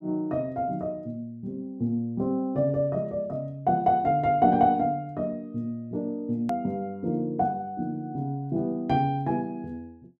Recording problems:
hard cut with a click; at 6.5 s

